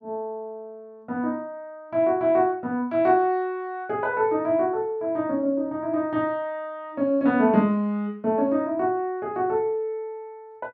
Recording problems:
none

